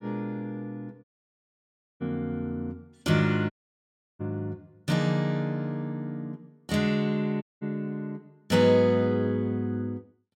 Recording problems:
dropout; at 1 s for 1 s, at 3.5 s for 0.5 s and at 7.5 s

